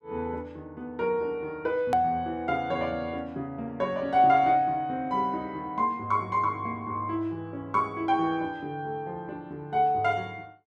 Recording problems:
hard cut with a click; at 2 s

